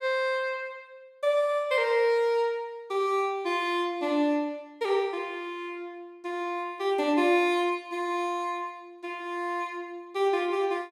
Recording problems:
none

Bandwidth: 16 kHz